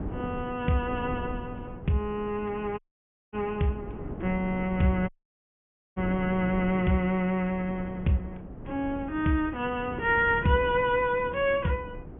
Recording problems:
treble missing; nothing above 3.2 kHz
wind noise; below 330 Hz, SNR 12 dB
dropout; at 3 s for 0.5 s and at 5 s for 1 s

